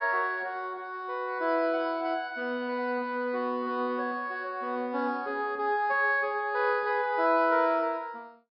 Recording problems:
treble cut off; nothing above 5.3 kHz

